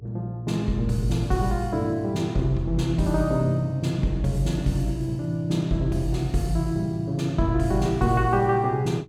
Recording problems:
hum; 60 Hz, harmonics up to 420 Hz, SNR 25 dB

